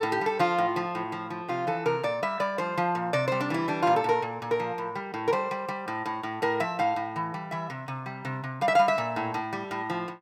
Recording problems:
none

